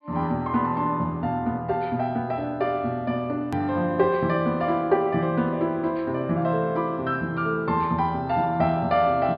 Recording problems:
treble missing; nothing above 5.1 kHz
click at an edit; at 3.5 s

